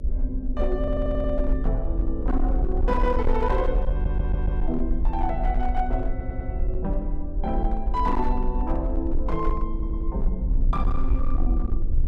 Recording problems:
distorted audio; hard clipping, signal-to-distortion ratio 11 dB
electrical hum; 50 Hz, harmonics up to 600 Hz, SNR 14 dB
rumble; below 48 Hz, SNR -1 dB
stutter; 4 times, first at 1 s

